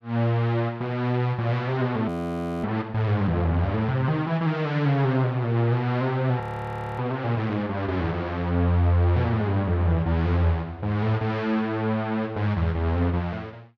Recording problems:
audio freezing; at 2 s for 0.5 s and at 6.5 s for 0.5 s

